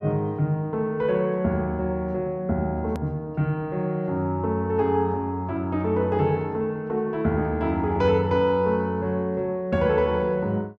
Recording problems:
click at an edit; at 3 s

